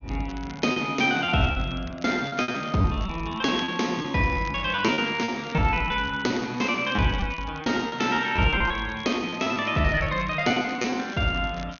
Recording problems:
treble missing; nothing above 6.6 kHz
crackling; vinyl, SNR 22 dB
lost packets; 13% of the sound replaced, filled with repeated pitch periods

